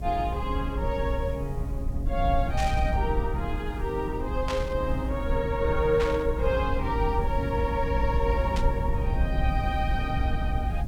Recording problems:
electrical hum; 60 Hz, harmonics up to 720 Hz, SNR 23 dB
hiss; slope -2 dB per octave, SNR 28 dB
rumble; below 84 Hz, SNR 1 dB
static burst; 4 times, first at 2.5 s; peak -1 dB vs average level

